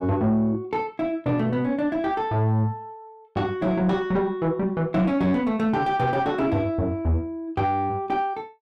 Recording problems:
distortion; soft clipping, signal-to-distortion ratio 11 dB

